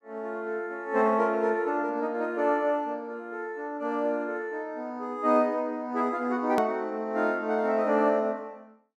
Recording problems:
hard cut with a click; at 6.5 s

